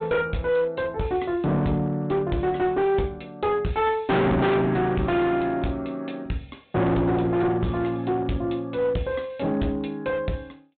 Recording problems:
treble cut off; nothing above 4 kHz
distortion; hard clipping, uneven, signal-to-distortion ratio 6 dB

